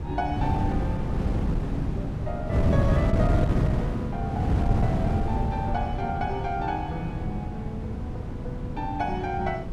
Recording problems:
wind on the microphone; below 210 Hz, SNR -5 dB

